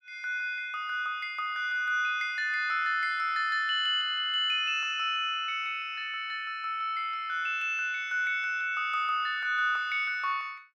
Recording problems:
none

